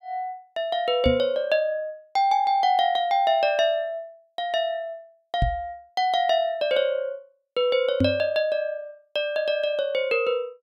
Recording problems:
microphone thump; at 1 s, at 5.5 s and at 8 s; peak +5 dB vs average level

